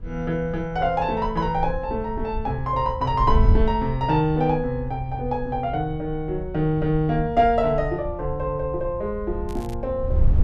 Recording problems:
wind on the microphone; below 84 Hz, SNR 7 dB
crackle; at 9.5 s; loose cable, SNR 26 dB

